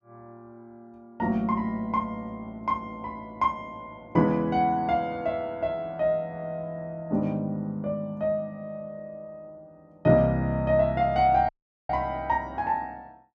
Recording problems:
audio cutting out; at 11 s

